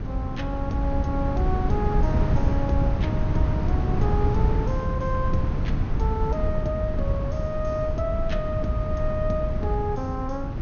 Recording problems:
treble missing; nothing above 6.5 kHz
wind on the microphone; below 140 Hz, SNR -3 dB

